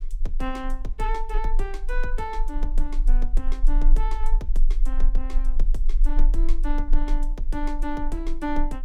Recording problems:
low-frequency rumble; below 30 Hz, strongest tone 20 Hz, SNR -6 dB

